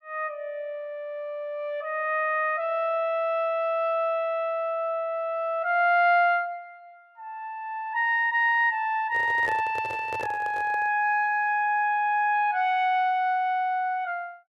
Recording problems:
handling noise; from 9 to 11 s; peak -6 dB vs average level

